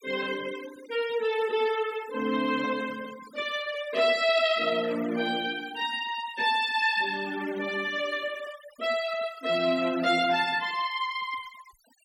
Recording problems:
denoising artefacts; signal-to-artefact ratio 17 dB

